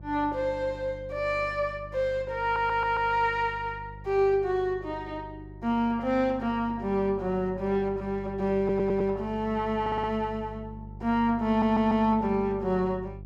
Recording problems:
hum; 50 Hz, harmonics up to 550 Hz, SNR 16 dB
stutter; 4 times, first at 2.5 s

